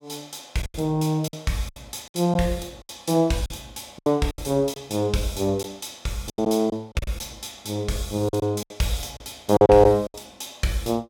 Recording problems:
packet loss; 10% of the sound replaced, filled with silence

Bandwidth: 17 kHz